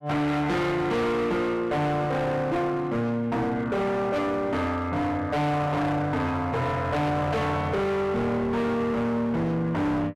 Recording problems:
distorted audio; hard clipping, signal-to-distortion ratio 7 dB

